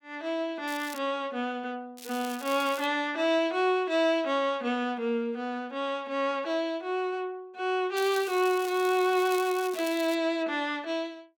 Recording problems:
crackling; at 0.5 s, at 2 s and from 8 to 10 s; loose cable, SNR 15 dB

